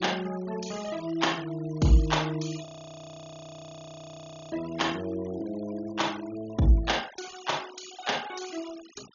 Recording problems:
treble cut off; nothing above 6.8 kHz
noise reduction artefacts; signal-to-artefact ratio 17 dB
frozen audio; at 2.5 s for 2 s

